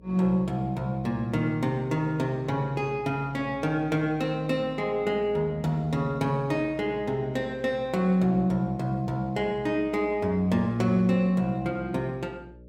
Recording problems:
hum; 60 Hz, harmonics up to 600 Hz, SNR 24 dB

